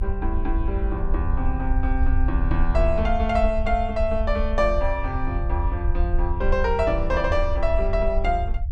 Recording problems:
rumble; below 62 Hz, SNR 1 dB

